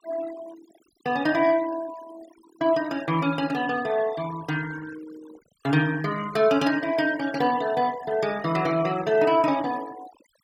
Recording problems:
noise reduction artefacts; signal-to-artefact ratio 18 dB

